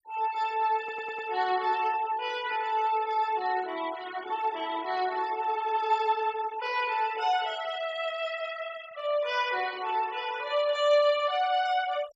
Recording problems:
noise reduction artefacts; signal-to-artefact ratio 17 dB
stutter; at 1 s

